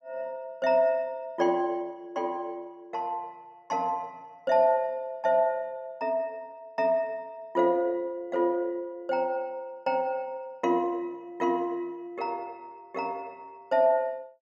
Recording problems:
none

